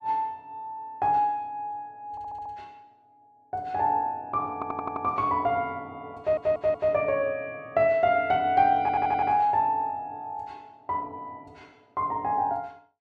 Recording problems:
stutter; 4 times, first at 2 s

